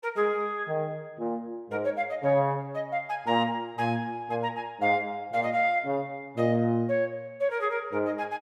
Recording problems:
none

